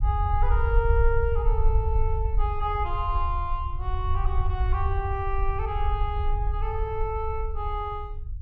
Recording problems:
low-frequency rumble; below 66 Hz, SNR -2 dB

